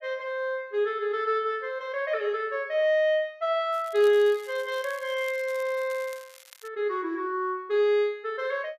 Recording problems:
crackling; from 3.5 to 6.5 s; loose cable, SNR 22 dB

